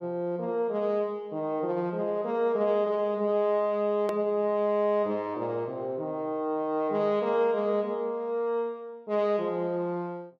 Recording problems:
edit click; at 4 s

